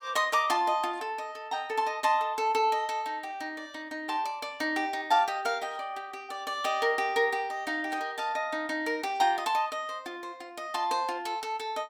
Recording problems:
none

